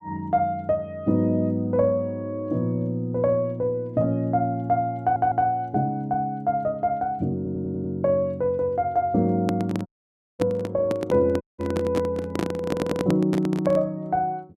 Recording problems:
stutter; at 5 s, at 7.5 s and at 13 s
microphone handling noise; from 9.5 to 14 s; peak +2 dB vs average level
dropout; at 10 s for 0.5 s and at 11 s

